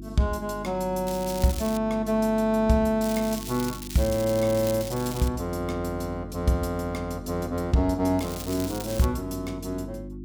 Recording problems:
hum; 50 Hz, harmonics up to 350 Hz, SNR 12 dB
crackling; at 1 s, from 3 to 5.5 s and at 8 s; loose cable, SNR 12 dB

